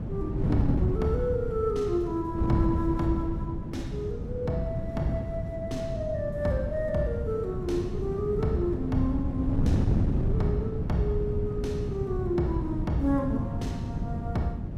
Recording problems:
wind on the microphone; below 190 Hz, SNR 1 dB

